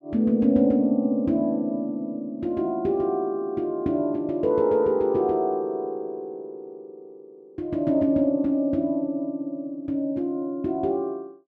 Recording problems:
none

